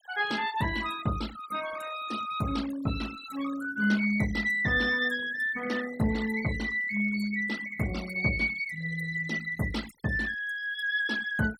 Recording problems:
noise reduction artefacts; signal-to-artefact ratio 15 dB

